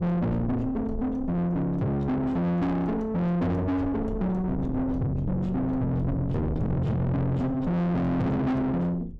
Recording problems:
distorted audio; soft clipping, signal-to-distortion ratio 7 dB
rumble; below 230 Hz, SNR 10 dB

